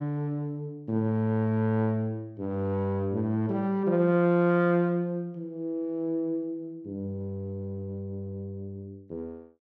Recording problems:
none

